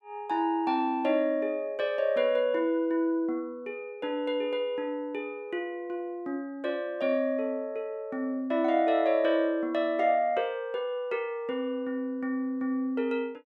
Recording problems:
none

